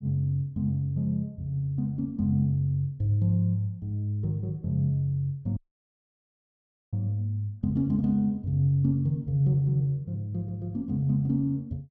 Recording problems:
dropout; at 5.5 s for 1.5 s

